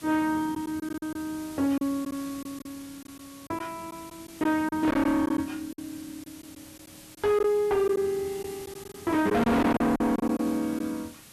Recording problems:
distortion; soft clipping, signal-to-distortion ratio 7 dB
hiss; slope -1 dB per octave, SNR 19 dB
lost packets; 8% of the sound replaced, filled with silence

